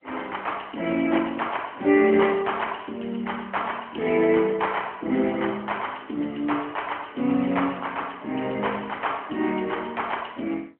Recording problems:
phone line; 220 Hz to 3.2 kHz, AMR-NB

